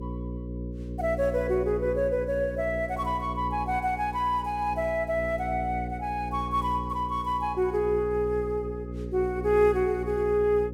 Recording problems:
electrical hum; 60 Hz, harmonics up to 540 Hz, SNR 9 dB

